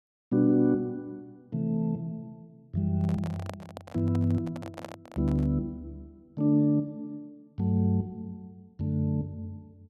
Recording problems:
microphone handling noise; from 3 to 5.5 s; peak -6 dB vs average level

